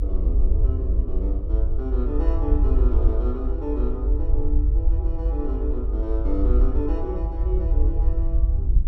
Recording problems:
low-frequency rumble; below 58 Hz, SNR -8 dB
wind noise; below 120 Hz, SNR 13 dB

